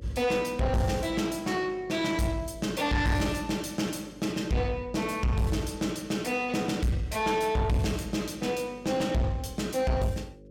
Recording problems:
distortion; soft clipping, signal-to-distortion ratio 8 dB
electrical hum; 50 Hz, harmonics up to 550 Hz, SNR 23 dB

